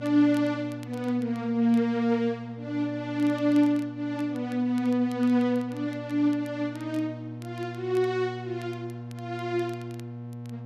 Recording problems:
electrical hum; 60 Hz, harmonics up to 1.1 kHz, SNR 13 dB
crackle; vinyl, SNR 28 dB

